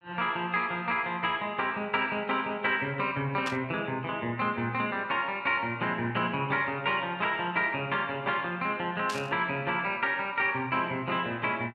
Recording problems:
burst of static; at 3.5 s and at 9 s; peak -2 dB vs average level

